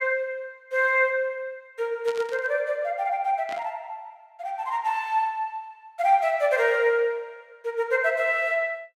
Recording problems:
burst of static; at 2 s and at 3.5 s; peak -10 dB vs average level

